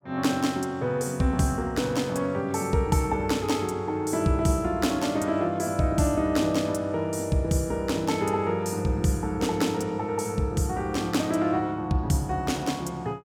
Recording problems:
none

